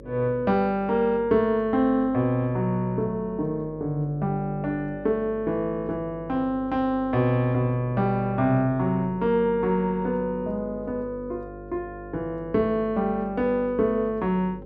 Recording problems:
electrical hum; 50 Hz, harmonics up to 550 Hz, SNR 17 dB

